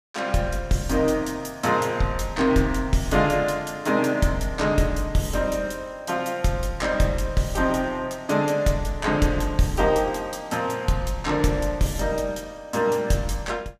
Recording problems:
none

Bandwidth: 15 kHz